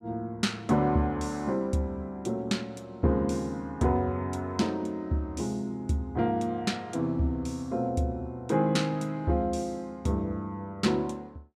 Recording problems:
none

